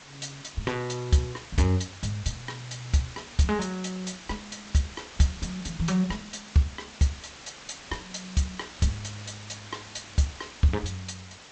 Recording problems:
lossy codec; G.722, log-spectral distance 13 dB, nothing above 8 kHz
hiss; slope -1 dB per octave, SNR 14 dB

